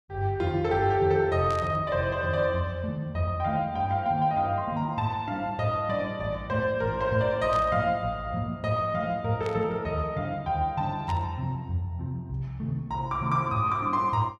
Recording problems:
static burst; 4 times, first at 1.5 s; peak -10 dB vs average level

